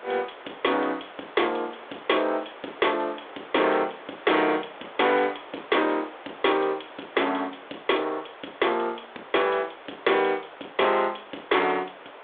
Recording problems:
phone line; 280 Hz to 3.6 kHz, G.726
distortion; hard clipping, uneven, signal-to-distortion ratio 11 dB
background hiss; SNR 17 dB

